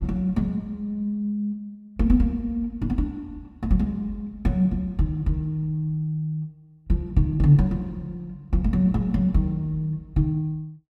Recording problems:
none

